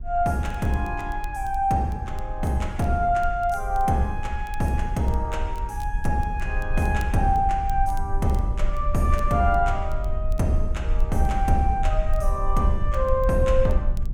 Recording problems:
low-frequency rumble; below 52 Hz, SNR 5 dB
crackling; vinyl, SNR 29 dB

